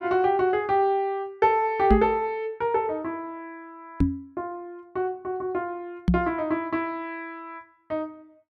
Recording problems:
knock on the microphone; at 2 s, at 4 s and at 6 s; peak +8 dB vs average level

